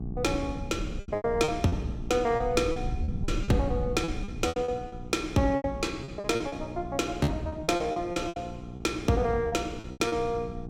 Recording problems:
hum; 60 Hz, harmonics up to 840 Hz, SNR 13 dB
low-frequency rumble; below 120 Hz, SNR 10 dB
lost packets; 14% of the sound replaced, filled with repeated pitch periods

